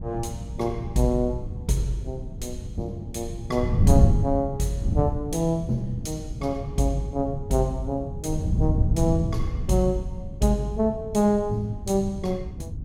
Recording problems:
wind on the microphone; below 150 Hz, SNR 3 dB

